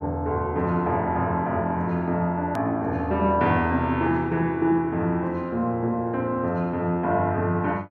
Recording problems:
hard cut with a click; at 2.5 s

